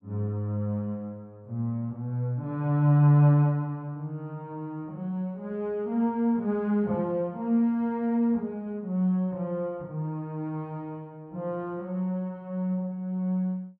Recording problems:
none

